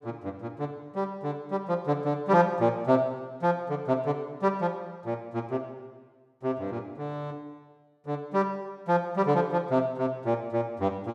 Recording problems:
none

